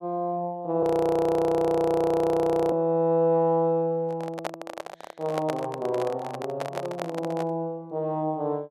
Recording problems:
frozen audio; at 1 s for 2 s
handling noise; from 4 to 7.5 s; peak -1 dB vs average level

